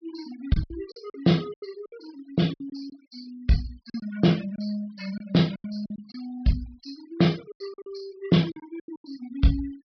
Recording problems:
treble cut off; nothing above 5.5 kHz
denoising artefacts; signal-to-artefact ratio 22 dB
packet loss; 11% of the sound replaced, filled with silence

